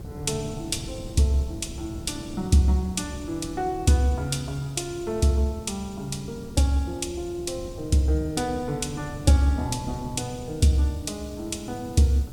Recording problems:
hum; 60 Hz, harmonics up to 660 Hz, SNR 29 dB
background hiss; SNR 28 dB
wind on the microphone; below 200 Hz, SNR 15 dB

